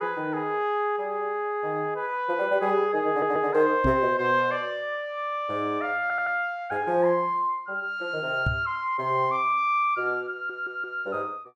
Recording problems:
audio stuttering; at 3 s, at 6 s and at 10 s
microphone thump; at 4 s and at 8.5 s; peak +2 dB vs average level

